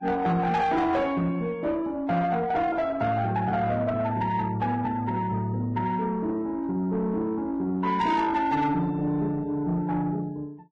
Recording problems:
codec artefacts; Vorbis, log-spectral distance 2 dB
distortion; soft clipping, signal-to-distortion ratio 11 dB

